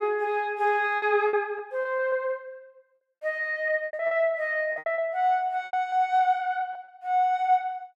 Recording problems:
lost packets; 9% of the sound replaced, filled with repeated pitch periods

